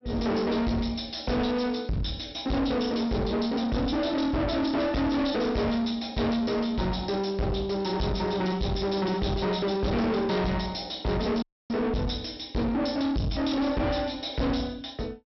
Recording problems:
treble cut off; nothing above 5.7 kHz
distortion; soft clipping, signal-to-distortion ratio 5 dB
dropout; at 11 s

